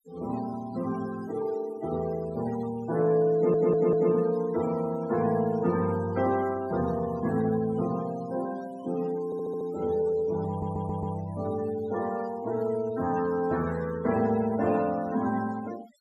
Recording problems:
denoising artefacts; signal-to-artefact ratio 18 dB
stutter; at 3.5 s, at 9.5 s and at 10 s

